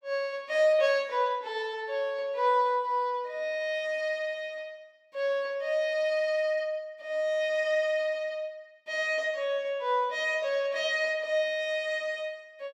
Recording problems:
none

